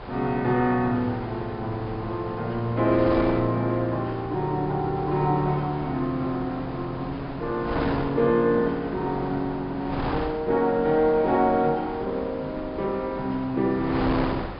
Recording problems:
treble cut off; nothing above 5.2 kHz
wind on the microphone; below 1.1 kHz, SNR 10 dB

